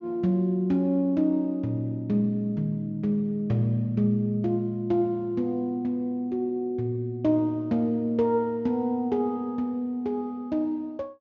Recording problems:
treble cut off; nothing above 7.1 kHz

